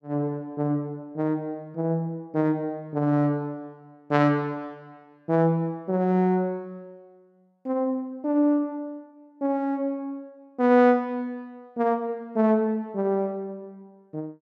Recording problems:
none

